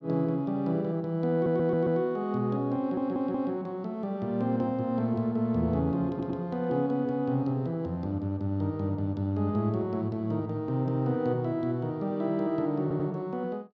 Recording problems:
audio stuttering; 4 times, first at 1.5 s

